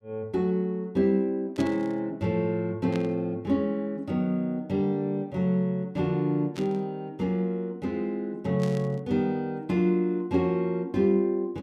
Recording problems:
burst of static; 4 times, first at 1.5 s; peak -9 dB vs average level

